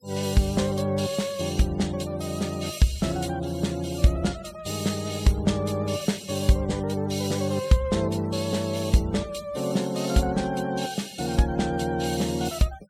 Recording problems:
noise reduction artefacts; signal-to-artefact ratio 22 dB

